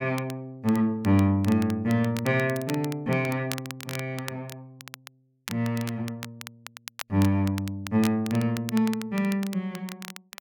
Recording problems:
crackling; vinyl, SNR 15 dB

